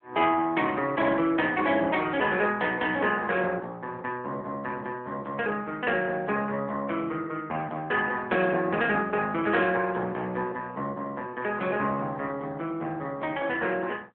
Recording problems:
telephone audio; 150 Hz to 3.4 kHz, AMR-NB

